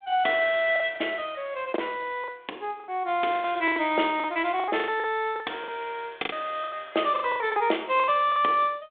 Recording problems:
telephone audio; 260 Hz to 3.6 kHz, G.726
packet loss; 14% of the sound replaced, filled with the last packet

